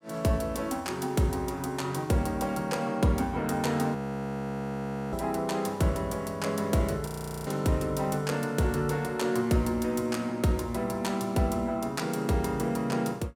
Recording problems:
frozen audio; at 4 s for 1 s and at 7 s

